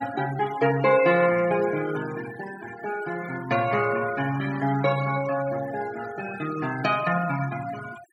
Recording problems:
denoising artefacts; signal-to-artefact ratio 15 dB

